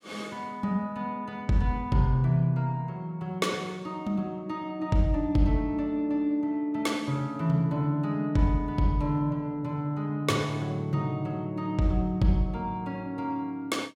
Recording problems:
none

